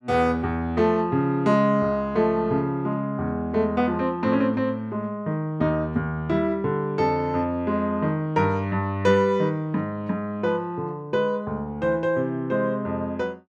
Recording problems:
none

